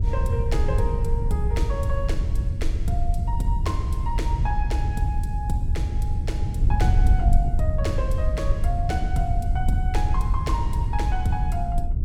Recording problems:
wind on the microphone; below 84 Hz, SNR -6 dB

